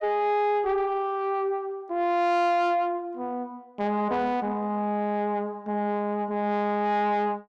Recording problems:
distortion; soft clipping, signal-to-distortion ratio 10 dB

